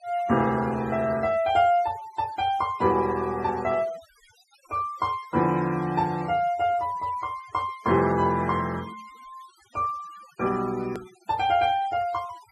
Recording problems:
noise reduction artefacts; signal-to-artefact ratio 22 dB
edit click; at 11 s

